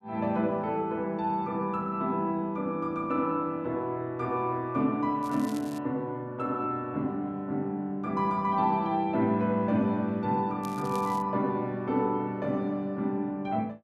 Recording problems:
crackle; at 5 s and at 11 s; loose cable, SNR 20 dB

